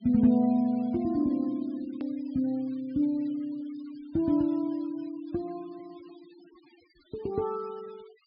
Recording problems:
treble cut off; nothing above 5.5 kHz
noise reduction artefacts; signal-to-artefact ratio 27 dB
edit click; at 2 s

